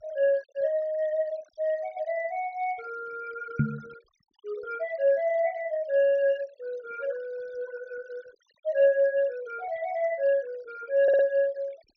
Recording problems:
treble cut off; nothing above 6.3 kHz
denoising artefacts; signal-to-artefact ratio 24 dB
knock on the microphone; at 3.5 s; peak +6 dB vs average level
audio stuttering; at 11 s

